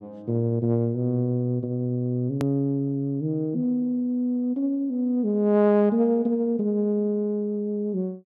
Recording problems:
edit click; at 2.5 s

